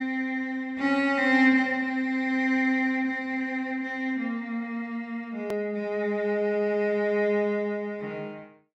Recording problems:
edit click; at 5.5 s

